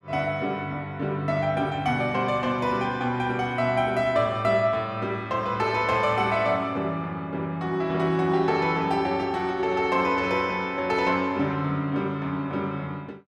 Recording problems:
none

